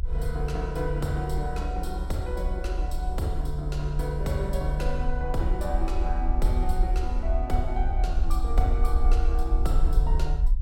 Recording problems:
low-frequency rumble; below 58 Hz, SNR -3 dB

